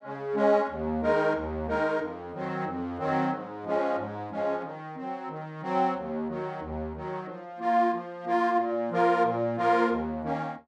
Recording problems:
none

